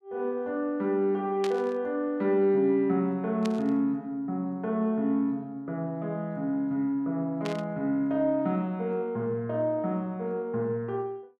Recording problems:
burst of static; at 1.5 s, at 3.5 s and at 7.5 s; peak -5 dB vs average level

